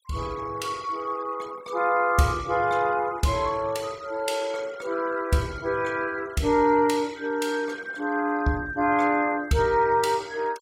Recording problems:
denoising artefacts; signal-to-artefact ratio 23 dB

